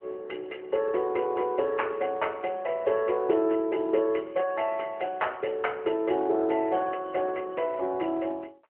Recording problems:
telephone audio; 280 Hz to 3.1 kHz, AMR-NB

